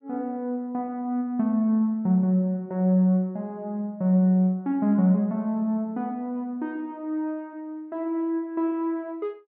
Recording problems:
none

